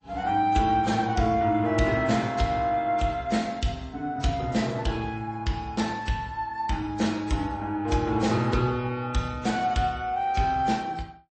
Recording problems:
lossy codec; MP3, then AAC, log-spectral distance 2 dB

